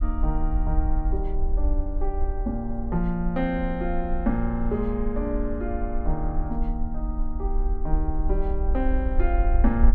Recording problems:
low-frequency rumble; below 50 Hz, SNR 0 dB

